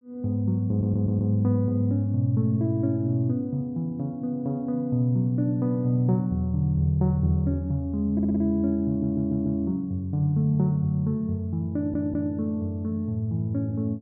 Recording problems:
audio stuttering; 4 times, first at 0.5 s

